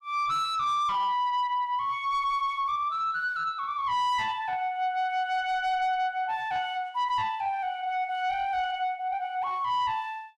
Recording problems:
distortion; soft clipping, signal-to-distortion ratio 10 dB

